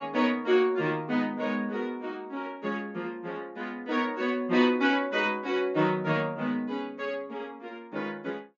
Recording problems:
low-pass filter; nothing above 7.2 kHz

